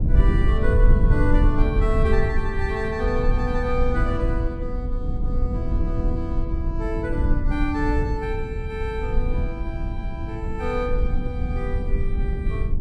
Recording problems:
low-frequency rumble; below 80 Hz, SNR -4 dB

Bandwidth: 14.5 kHz